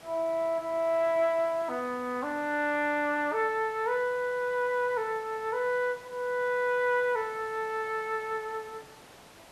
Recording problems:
hiss; slope -4 dB per octave, SNR 21 dB

